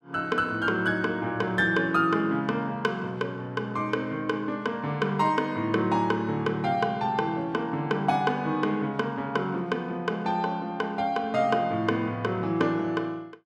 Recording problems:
none

